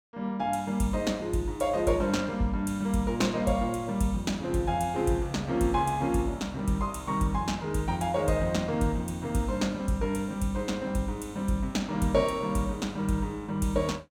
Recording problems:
none

